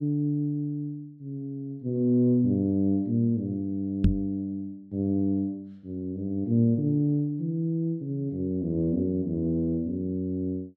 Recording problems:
microphone bump; at 4 s; peak +8 dB vs average level

